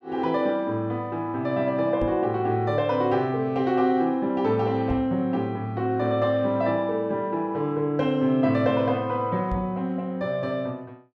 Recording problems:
microphone bump; at 2 s, at 5 s and at 9.5 s; peak -3 dB vs average level

